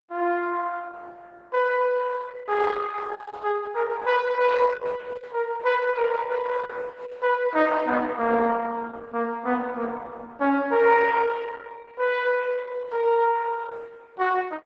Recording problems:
lossy codec; Opus, log-spectral distance 4 dB

